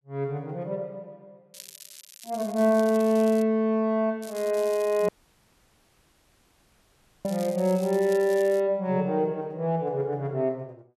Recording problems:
crackling; from 1.5 to 3.5 s and from 4 to 8.5 s; loose cable, SNR 20 dB
dropout; at 5 s for 2 s

